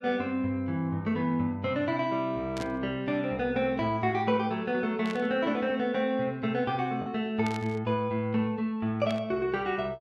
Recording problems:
packet loss; 0.4% of the sound replaced, filled with the last packet
burst of static; 4 times, first at 2.5 s; peak -7 dB vs average level

